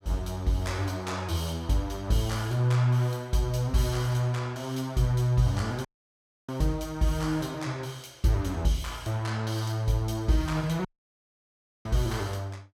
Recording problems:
dropout; at 6 s for 0.5 s and at 11 s for 1 s

